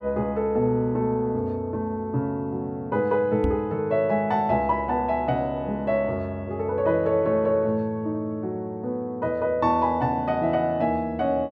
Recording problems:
microphone bump; at 3.5 s; peak +2 dB vs average level

